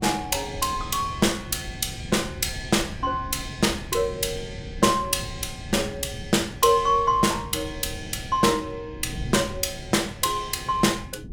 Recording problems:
wind on the microphone; below 170 Hz, SNR 14 dB

